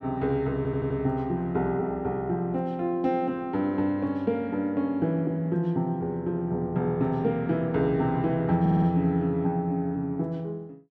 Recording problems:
audio stuttering; at 0.5 s and at 8.5 s

